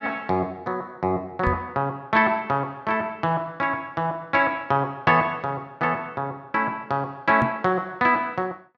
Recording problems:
microphone thump; at 1.5 s and at 7.5 s; peak +2 dB vs average level

